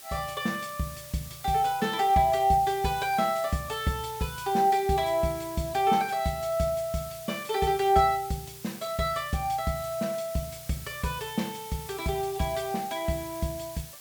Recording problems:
background hiss; slope +1 dB per octave, SNR 15 dB

